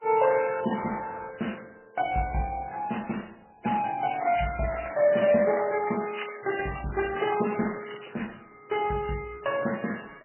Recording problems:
codec artefacts; Opus, then MP3, log-spectral distance 9 dB, nothing above 3 kHz
crackling; from 4 to 8 s; loose cable, SNR 13 dB

